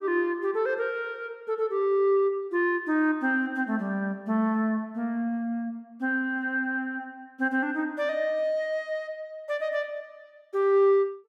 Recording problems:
none

